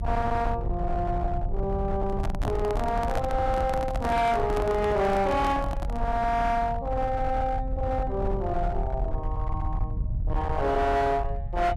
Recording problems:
distortion; hard clipping, uneven, signal-to-distortion ratio 10 dB
low-frequency rumble; below 90 Hz, SNR 5 dB
handling noise; from 2 to 6 s; peak +1 dB vs average level

